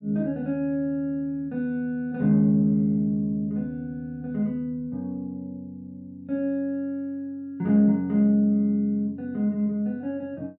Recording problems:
none

